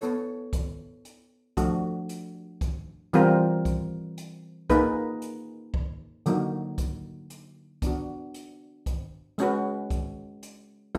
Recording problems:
none

